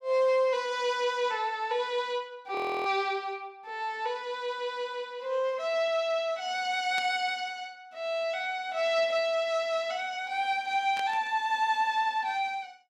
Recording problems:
frozen audio; at 2.5 s
static burst; at 7 s and at 11 s; peak -6 dB vs average level

